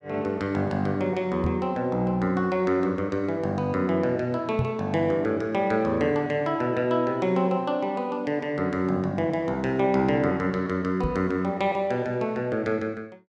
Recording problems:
microphone bump; at 1.5 s, at 4.5 s and at 11 s; peak +2 dB vs average level

